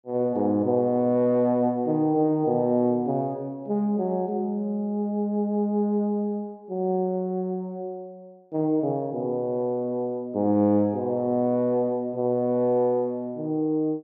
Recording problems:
none

